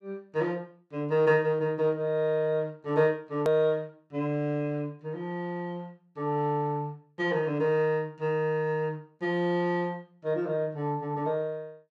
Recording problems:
edit click; at 3.5 s

